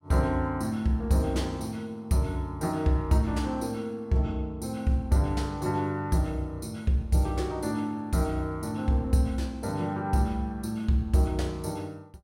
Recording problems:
none

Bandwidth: 16 kHz